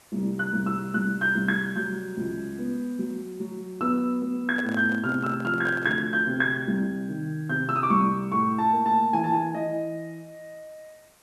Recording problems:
background hiss; slope -2 dB per octave, SNR 29 dB
handling noise; from 4.5 to 6 s; peak -8 dB vs average level

